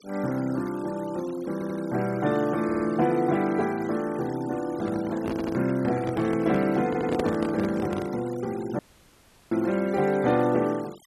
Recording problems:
denoising artefacts; signal-to-artefact ratio 20 dB
audio stuttering; 4 times, first at 1.5 s
handling noise; from 4.5 to 8 s; peak +1 dB vs average level
dropout; at 9 s for 0.5 s

